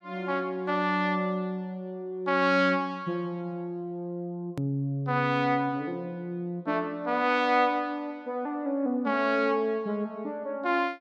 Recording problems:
click at an edit; at 4.5 s

